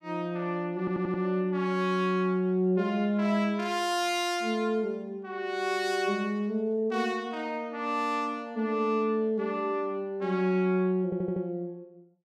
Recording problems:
stutter; at 1 s and at 11 s

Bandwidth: 15 kHz